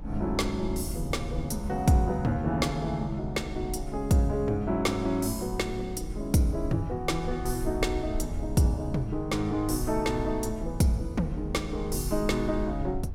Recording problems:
low-frequency rumble; below 60 Hz, SNR 11 dB

